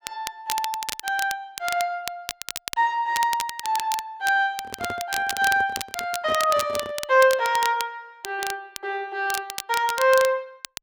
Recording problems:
crackling; vinyl, SNR 9 dB
handling noise; from 4.5 to 7 s; peak -7 dB vs average level

